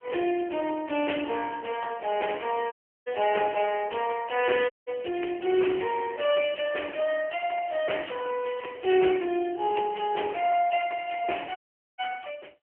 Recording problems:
telephone audio; 280 Hz to 3.2 kHz, AMR-NB
audio cutting out; at 2.5 s, at 4.5 s and at 12 s

